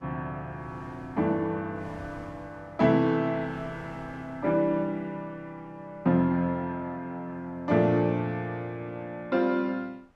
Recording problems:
wind noise; below 970 Hz, SNR 24 dB

